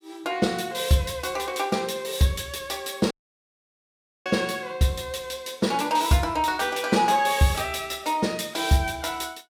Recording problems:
dropout; at 3 s for 1 s

